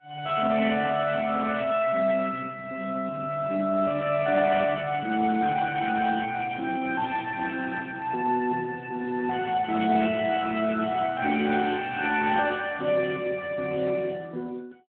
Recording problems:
telephone audio; 390 Hz to 2.2 kHz, Speex

